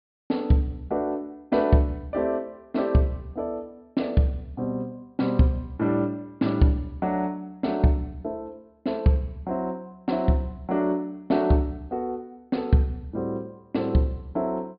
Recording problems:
low-pass filter; nothing above 4.8 kHz

